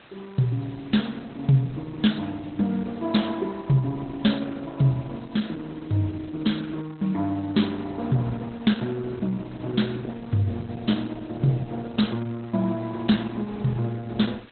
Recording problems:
lossy codec; Opus, log-spectral distance 7 dB, nothing above 4 kHz
hiss; SNR 24 dB

